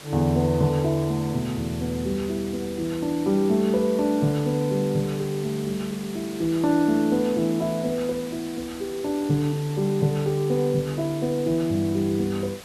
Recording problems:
hiss; slope -2 dB per octave, SNR 16 dB

